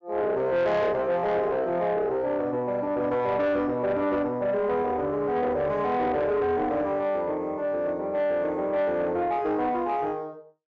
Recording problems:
treble cut off; nothing above 8 kHz
distortion; soft clipping, signal-to-distortion ratio 12 dB

